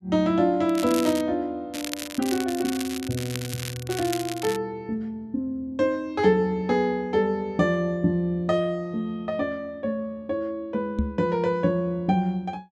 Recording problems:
crackling; at 0.5 s and from 1.5 to 4.5 s; loose cable, SNR 10 dB
knock on the microphone; at 11 s; peak +4 dB vs average level

